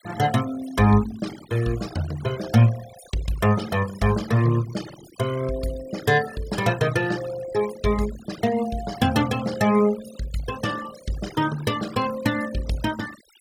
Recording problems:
denoising artefacts; signal-to-artefact ratio 16 dB

